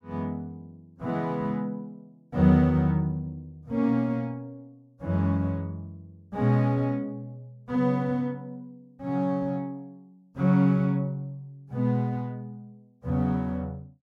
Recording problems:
none

